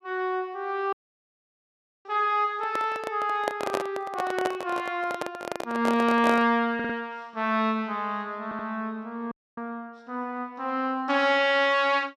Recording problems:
dropout; at 1 s for 1 s and at 9.5 s
handling noise; from 2.5 to 6.5 s; peak +2 dB vs average level
stutter; at 7 s and at 8.5 s

